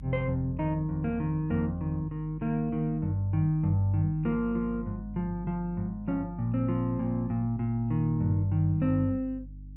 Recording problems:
electrical hum; 50 Hz, harmonics up to 300 Hz, SNR 16 dB

